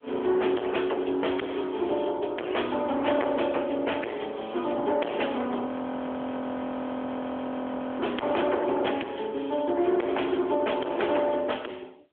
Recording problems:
telephone audio; 260 Hz to 3.3 kHz, AMR-NB
distorted audio; hard clipping, uneven, signal-to-distortion ratio 4 dB
frozen audio; at 5.5 s for 2.5 s

